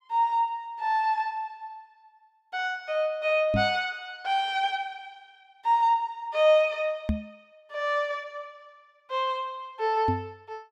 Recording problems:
knock on the microphone; at 3.5 s, at 7 s and at 10 s; peak +3 dB vs average level

